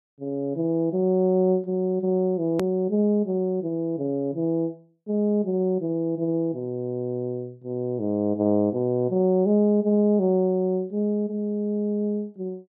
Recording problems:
edit click; at 2.5 s

